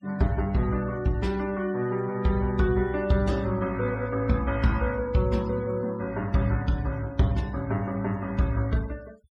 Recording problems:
noise reduction artefacts; signal-to-artefact ratio 23 dB

